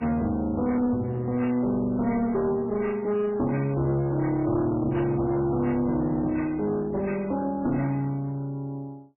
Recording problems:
lossy compression; MP3, log-spectral distance 2 dB, nothing above 2.6 kHz
distortion; hard clipping, uneven, signal-to-distortion ratio 9 dB

